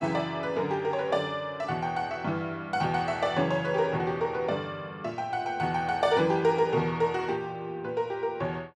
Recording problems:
none

